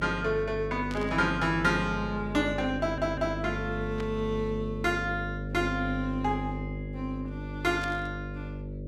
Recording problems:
hum; 50 Hz, harmonics up to 600 Hz, SNR 7 dB
burst of static; at 1 s, at 4 s and at 8 s; peak -8 dB vs average level
audio stuttering; at 3 s

